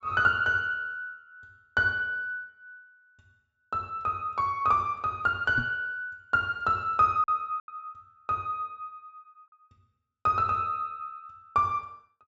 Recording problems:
treble missing; nothing above 8 kHz
packet loss; 1.3% of the sound replaced, filled with silence
microphone thump; at 5.5 s; peak -2 dB vs average level

